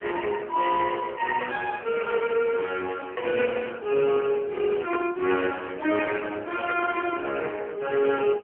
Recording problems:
telephone audio; 280 Hz to 2.8 kHz, AMR-NB

